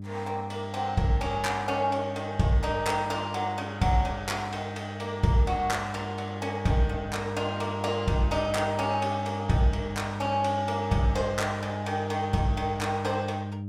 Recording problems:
electrical hum; 50 Hz, harmonics up to 600 Hz, SNR 8 dB

